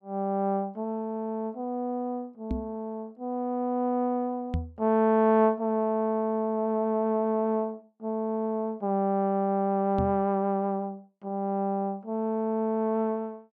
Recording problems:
microphone thump; at 2.5 s, at 4.5 s and at 10 s; peak +2 dB vs average level

